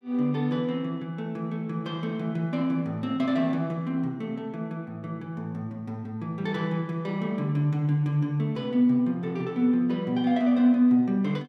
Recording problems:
none

